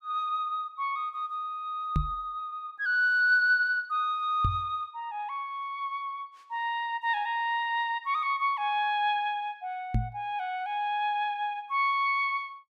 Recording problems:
microphone bump; at 2 s, at 4.5 s and at 10 s; peak +4 dB vs average level

